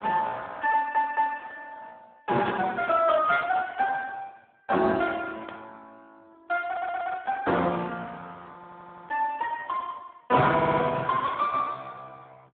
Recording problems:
phone line; 150 Hz to 2.8 kHz, Speex
stutter; 4 times, first at 0.5 s
burst of static; at 2.5 s and at 5.5 s; peak -10 dB vs average level

